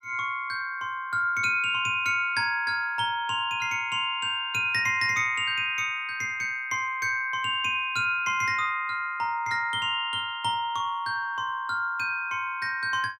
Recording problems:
none

